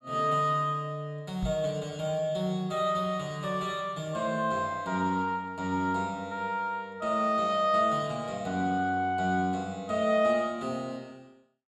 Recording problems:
microphone bump; at 1.5 s; peak -2 dB vs average level

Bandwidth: 14.5 kHz